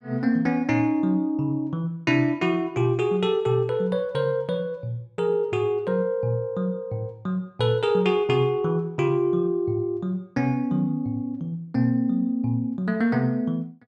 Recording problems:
none

